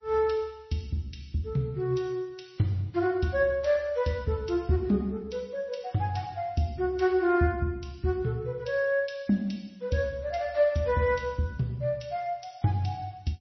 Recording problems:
lossy compression; MP3, log-spectral distance 4 dB, nothing above 5.8 kHz

